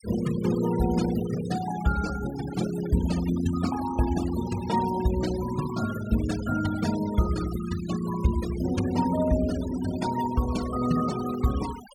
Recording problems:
denoising artefacts; signal-to-artefact ratio 13 dB

